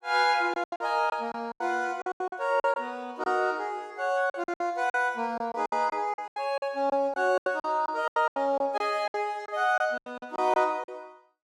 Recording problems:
packet loss; 15% of the sound replaced, filled with silence

